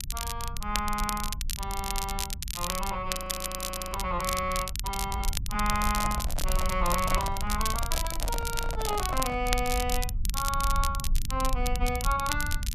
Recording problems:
rumble; below 60 Hz, SNR 4 dB
crackle; vinyl, SNR 3 dB
audio freezing; at 3 s for 1 s
microphone handling noise; from 5.5 to 9.5 s; peak -2 dB vs average level

